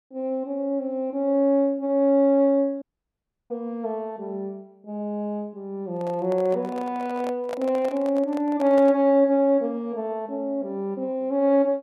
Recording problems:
audio cutting out; at 3 s for 0.5 s
microphone handling noise; from 6 to 9 s; peak -6 dB vs average level

